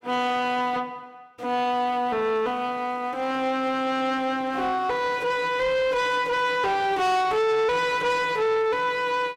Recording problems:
distorted audio; soft clipping, signal-to-distortion ratio 10 dB

